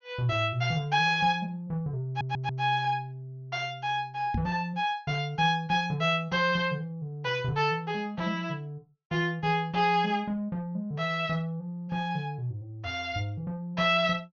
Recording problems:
low-pass filter; nothing above 6.6 kHz
stutter; at 2 s
microphone bump; at 4.5 s; peak +1 dB vs average level

